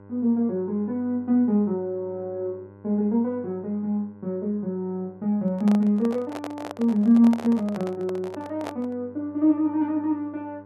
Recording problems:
hum; 50 Hz, harmonics up to 1.5 kHz, SNR 24 dB
handling noise; from 5.5 to 9 s; peak -6 dB vs average level

